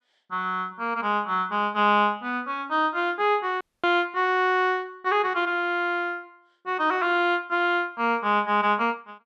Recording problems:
dropout; at 3.5 s

